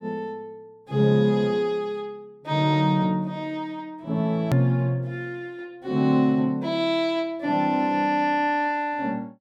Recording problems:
click at an edit; at 4.5 s

